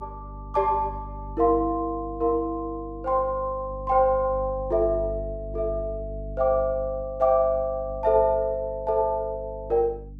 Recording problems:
mains hum; 50 Hz, harmonics up to 300 Hz, SNR 14 dB

